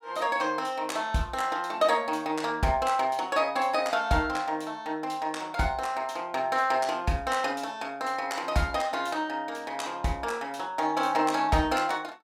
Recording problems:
none

